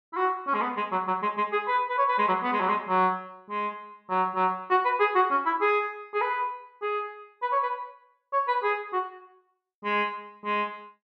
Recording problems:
none

